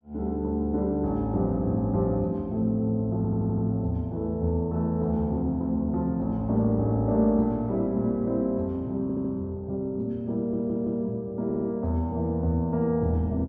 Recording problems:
stutter; 4 times, first at 3 s

